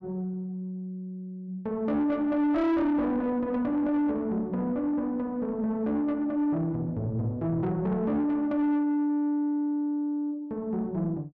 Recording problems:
distorted audio; soft clipping, signal-to-distortion ratio 11 dB

